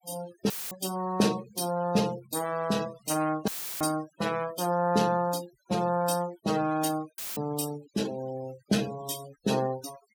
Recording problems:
noise reduction artefacts; signal-to-artefact ratio 17 dB
dropout; at 0.5 s, at 3.5 s and at 7 s; filled with static

